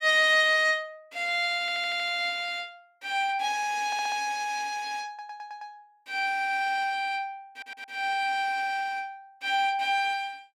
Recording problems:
audio stuttering; 4 times, first at 1.5 s

